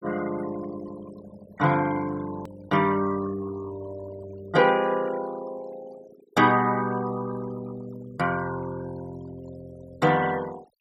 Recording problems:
denoising artefacts; signal-to-artefact ratio 19 dB
hard cut with a click; at 2.5 s

